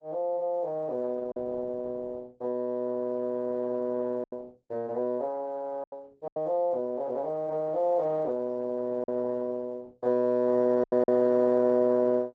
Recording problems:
lossy compression; Opus, log-spectral distance 2 dB
packet loss; 4% of the sound replaced, filled with silence

